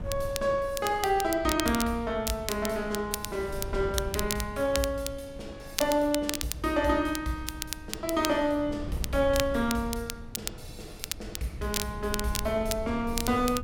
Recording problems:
wind noise; below 110 Hz, SNR 13 dB
crackling; vinyl, SNR 7 dB

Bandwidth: 16.5 kHz